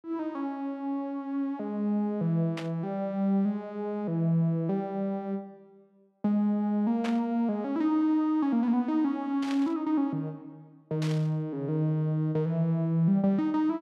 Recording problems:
burst of static; 4 times, first at 2.5 s; peak -5 dB vs average level

